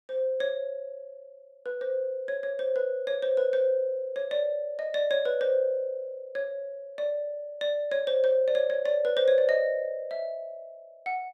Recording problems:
none

